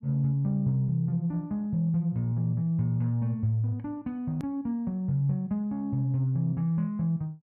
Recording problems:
hard cut with a click; at 4.5 s

